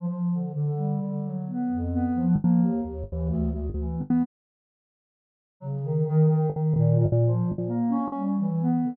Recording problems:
packet loss; 6% of the sound replaced, filled with the last packet
audio cutting out; at 4.5 s for 1.5 s

